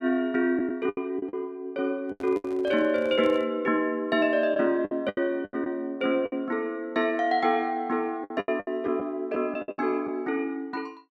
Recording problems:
lost packets; 9% of the sound replaced, filled with the last packet
handling noise; from 2 to 3.5 s; peak -12 dB vs average level

